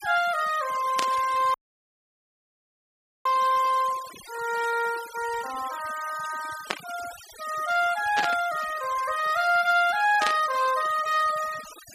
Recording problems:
denoising artefacts; signal-to-artefact ratio 15 dB
burst of static; 4 times, first at 1 s; peak +2 dB vs average level
audio cutting out; at 1.5 s for 1.5 s

